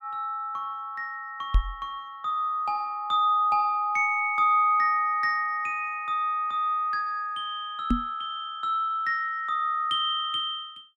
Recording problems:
microphone thump; at 1.5 s and at 8 s; peak +6 dB vs average level

